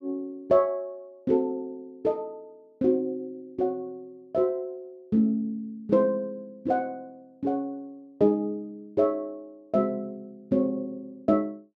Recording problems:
none

